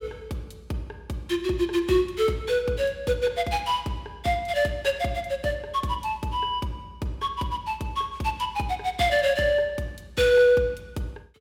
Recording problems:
none

